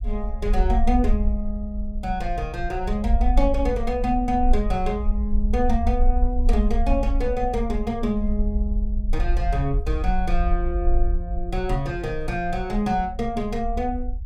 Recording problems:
rumble; below 52 Hz, SNR 1 dB

